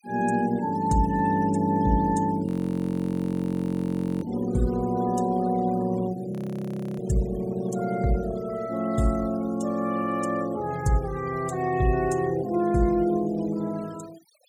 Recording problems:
noise reduction artefacts; signal-to-artefact ratio 22 dB
frozen audio; at 2.5 s for 1.5 s and at 6.5 s for 0.5 s

